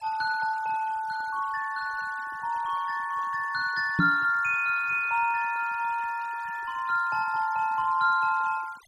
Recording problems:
denoising artefacts; signal-to-artefact ratio 22 dB
microphone thump; at 4 s; peak +5 dB vs average level

